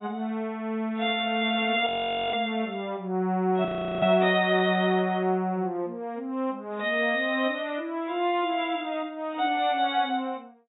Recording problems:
codec artefacts; AAC, log-spectral distance 2 dB, nothing above 3.3 kHz
frozen audio; at 2 s and at 3.5 s

